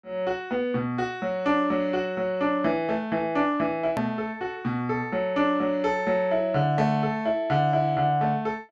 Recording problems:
click at an edit; at 4 s

